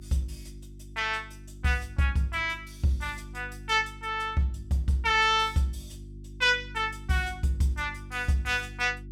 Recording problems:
hum; 50 Hz, harmonics up to 350 Hz, SNR 17 dB

